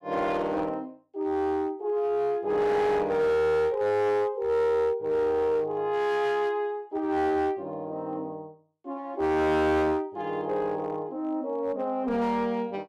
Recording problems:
distortion; hard clipping, uneven, signal-to-distortion ratio 11 dB

